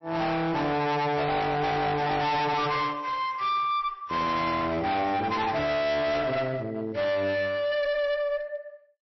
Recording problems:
codec artefacts; MP3, log-spectral distance 2 dB, nothing above 5.7 kHz
distorted audio; hard clipping, uneven, signal-to-distortion ratio 5 dB

